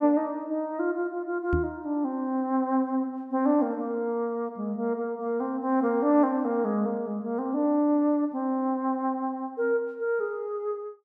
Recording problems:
knock on the microphone; at 1.5 s; peak +3 dB vs average level

